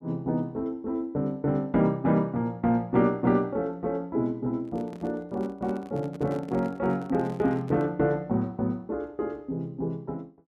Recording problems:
microphone handling noise; from 4.5 to 8 s; peak -10 dB vs average level

